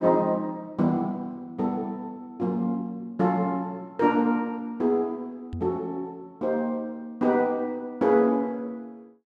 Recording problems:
microphone thump; at 5.5 s; peak -4 dB vs average level

